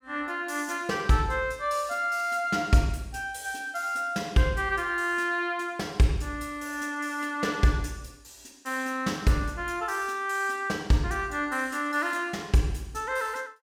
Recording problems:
none

